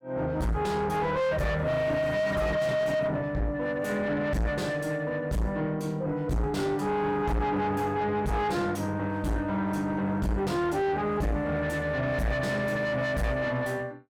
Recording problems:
distortion; soft clipping, signal-to-distortion ratio 5 dB

